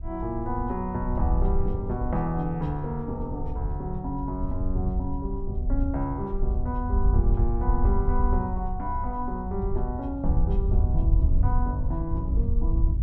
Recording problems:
wind on the microphone; below 74 Hz, SNR -3 dB

